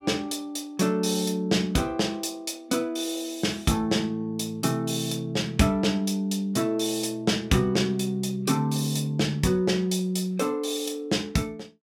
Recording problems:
none

